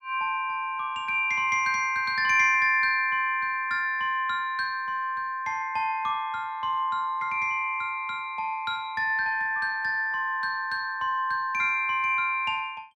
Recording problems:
none

